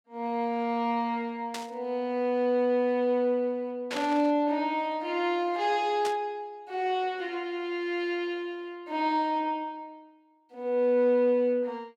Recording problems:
burst of static; at 1.5 s, at 4 s and at 6 s; peak -3 dB vs average level

